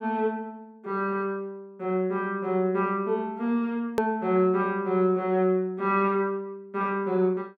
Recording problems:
edit click; at 4 s

